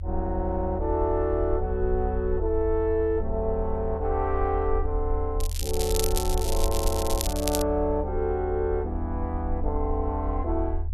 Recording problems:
rumble; below 80 Hz, SNR 4 dB
crackling; from 5.5 to 7.5 s; loose cable, SNR 4 dB

